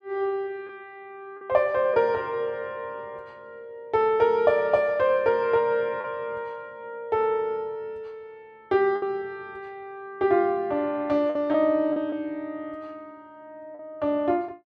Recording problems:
packet loss; 2% of the sound replaced, filled with the last packet

